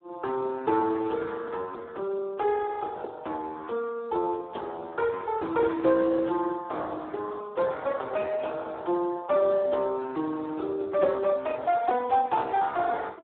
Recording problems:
phone line; 280 Hz to 4 kHz, Speex

